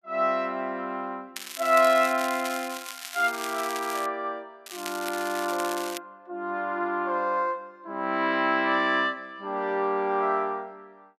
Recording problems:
crackle; from 1.5 to 4 s and from 4.5 to 6 s; loose cable, SNR 11 dB

